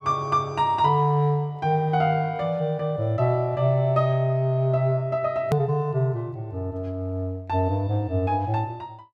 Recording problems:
click at an edit; at 5.5 s

